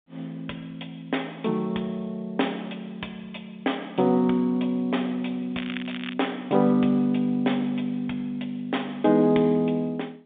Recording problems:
telephone audio; 280 Hz to 3.6 kHz, G.711
crackling; at 5.5 s; loose cable, SNR 12 dB

